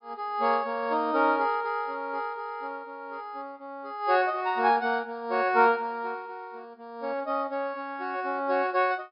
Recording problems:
low-pass filter; nothing above 5.5 kHz

